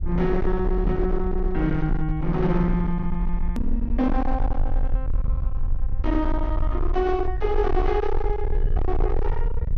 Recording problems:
low-pass filter; nothing above 6.5 kHz
distortion; hard clipping, signal-to-distortion ratio 8 dB
rumble; below 54 Hz, SNR 2 dB
click at an edit; at 3.5 s

